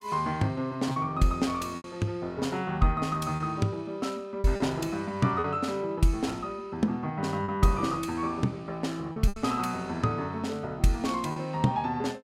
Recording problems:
lost packets; 4% of the sound replaced, filled with repeated pitch periods

